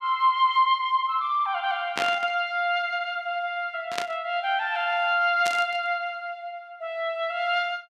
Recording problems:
static burst; at 2 s, at 4 s and at 5.5 s; peak +1 dB vs average level

